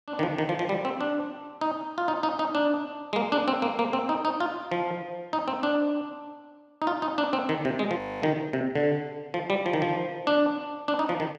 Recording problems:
audio freezing; at 8 s

